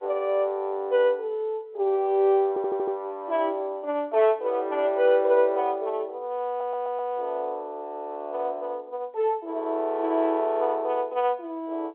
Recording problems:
phone line; 300 Hz to 3.4 kHz, G.711
stutter; at 2.5 s and at 6.5 s

